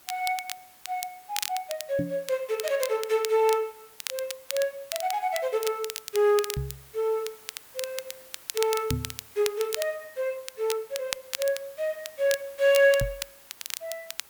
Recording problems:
hiss; slope -1 dB per octave, SNR 22 dB
crackle; vinyl, SNR 9 dB
microphone bump; 4 times, first at 2 s; peak +2 dB vs average level

